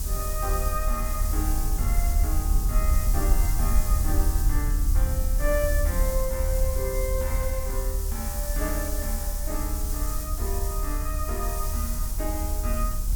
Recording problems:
background hiss; SNR 1 dB
rumble; below 70 Hz, strongest tone 38 Hz, SNR -5 dB

